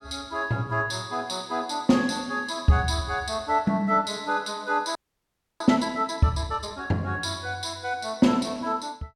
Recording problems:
frozen audio; at 5 s for 0.5 s

